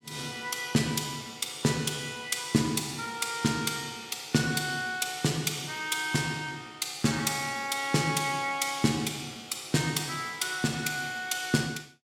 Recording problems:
none

